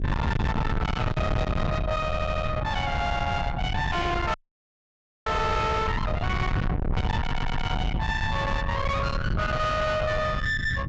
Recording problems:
treble missing; nothing above 8 kHz
distorted audio; soft clipping, signal-to-distortion ratio 6 dB
wind on the microphone; below 850 Hz, SNR 2 dB
audio stuttering; at 2 s and at 7 s
audio cutting out; at 4.5 s for 1 s

